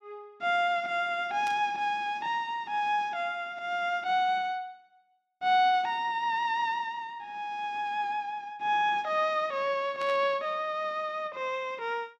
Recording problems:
burst of static; at 1.5 s and at 10 s; peak -9 dB vs average level

